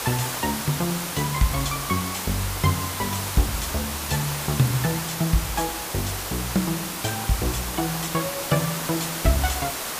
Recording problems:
background hiss; slope -2 dB per octave, SNR 2 dB

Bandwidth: 15 kHz